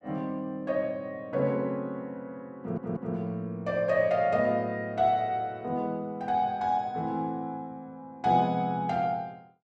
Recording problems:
stutter; at 2.5 s

